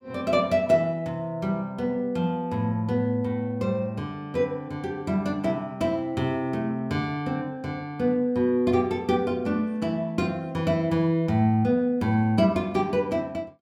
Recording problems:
none

